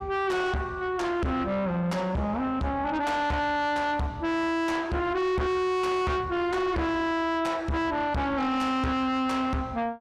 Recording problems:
distorted audio; soft clipping, signal-to-distortion ratio 7 dB

